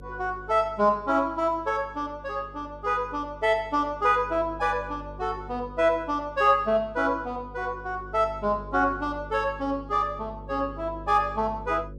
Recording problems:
electrical hum; 50 Hz, harmonics up to 550 Hz, SNR 18 dB

